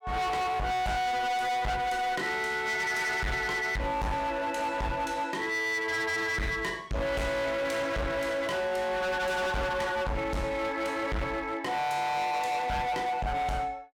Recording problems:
distorted audio; hard clipping, signal-to-distortion ratio 7 dB

